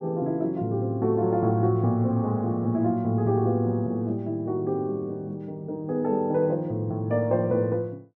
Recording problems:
none

